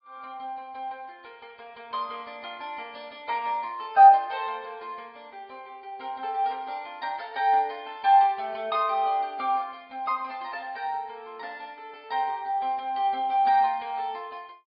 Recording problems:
low-pass filter; nothing above 4.6 kHz
lossy codec; AAC, log-spectral distance 2 dB

